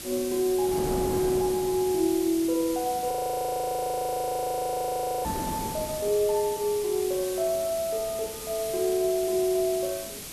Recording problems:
background hiss; slope +3 dB per octave, SNR 10 dB
wind noise; below 540 Hz, SNR 13 dB
frozen audio; at 3 s for 2 s

